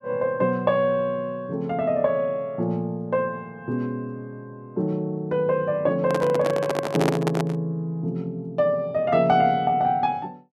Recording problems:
microphone handling noise; from 6 to 7.5 s; peak +3 dB vs average level

